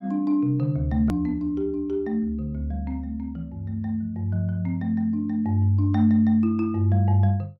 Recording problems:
edit click; at 1 s

